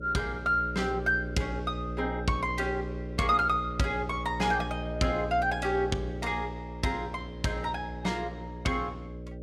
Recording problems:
hum; 60 Hz, harmonics up to 600 Hz, SNR 8 dB

